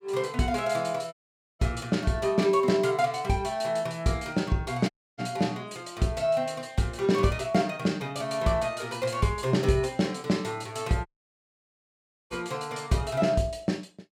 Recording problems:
audio cutting out; at 1 s, at 5 s and at 11 s for 1 s

